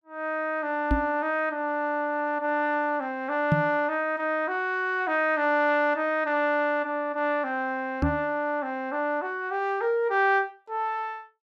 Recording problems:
microphone bump; at 1 s, at 3.5 s and at 8 s; peak +6 dB vs average level

